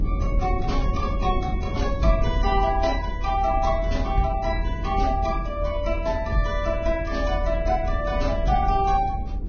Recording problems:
codec artefacts; Vorbis, log-spectral distance 2 dB, nothing above 6.5 kHz
low-frequency rumble; below 80 Hz, strongest tone 42 Hz, SNR 3 dB

